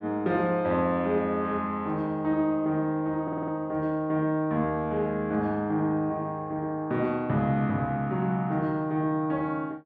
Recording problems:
audio stuttering; at 3 s

